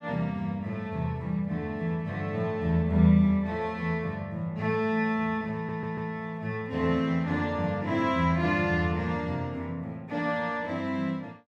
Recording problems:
stutter; at 5.5 s

